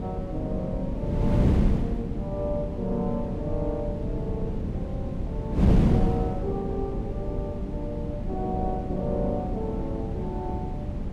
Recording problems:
rumble; below 70 Hz, strongest tone 40 Hz, SNR 8 dB
wind on the microphone; below 230 Hz, SNR -4 dB

